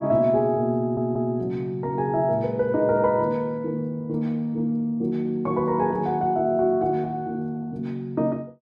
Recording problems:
stutter; at 1 s

